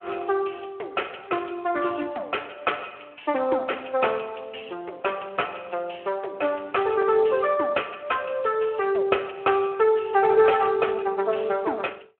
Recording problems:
phone line; 320 Hz to 3.1 kHz, Speex

